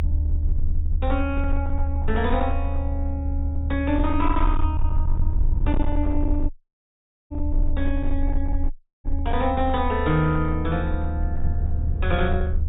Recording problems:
treble missing; nothing above 4 kHz
distortion; hard clipping, signal-to-distortion ratio 12 dB
low-frequency rumble; below 76 Hz, SNR 0 dB
wind on the microphone; below 140 Hz, SNR 12 dB
audio cutting out; at 6.5 s for 1 s and at 8.5 s

